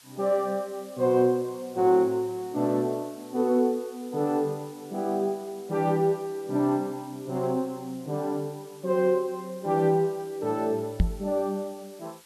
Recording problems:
hiss; slope +2 dB per octave, SNR 24 dB
microphone thump; at 11 s; peak +8 dB vs average level

